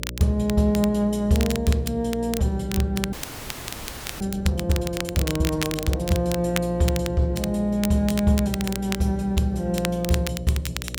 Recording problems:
hum; 60 Hz, harmonics up to 600 Hz, SNR 12 dB
crackling; vinyl, SNR 10 dB
audio freezing; at 3 s for 1 s

